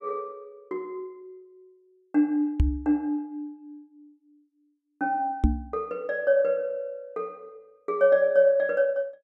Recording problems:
knock on the microphone; at 2.5 s and at 5.5 s; peak +8 dB vs average level

